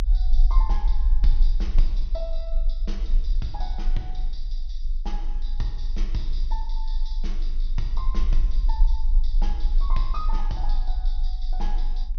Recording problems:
treble missing; nothing above 6.5 kHz
low-frequency rumble; below 36 Hz, strongest tone 24 Hz, SNR -11 dB

